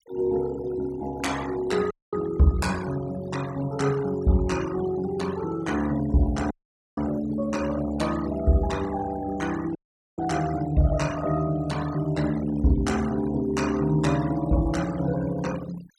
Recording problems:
noise reduction artefacts; signal-to-artefact ratio 16 dB
audio cutting out; at 2 s, at 6.5 s and at 10 s

